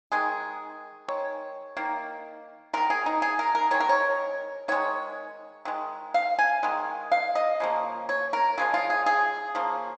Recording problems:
treble cut off; nothing above 8 kHz
click at an edit; at 1 s

